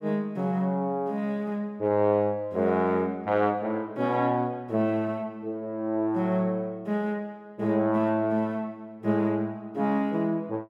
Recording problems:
none

